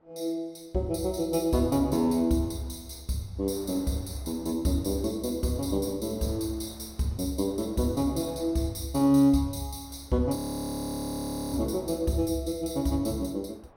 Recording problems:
wind on the microphone; below 970 Hz, SNR 26 dB
frozen audio; at 10 s for 1 s

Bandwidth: 16.5 kHz